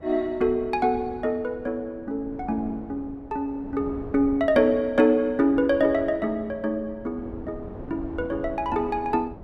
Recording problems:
wind noise; below 390 Hz, SNR 17 dB

